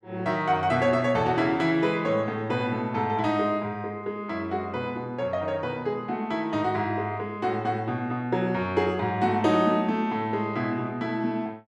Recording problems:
none

